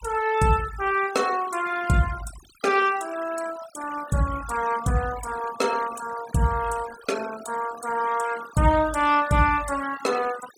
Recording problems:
noise reduction artefacts; signal-to-artefact ratio 16 dB

